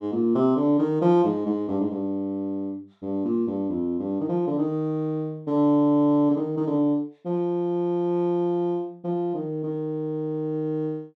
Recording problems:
none

